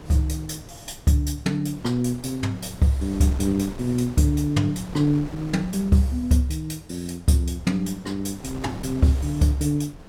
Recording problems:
wind on the microphone; below 490 Hz, SNR 16 dB

